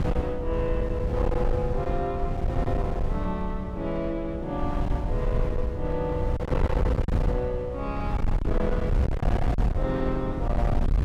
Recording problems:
distortion; hard clipping, signal-to-distortion ratio 6 dB
wind noise; below 110 Hz, SNR -1 dB

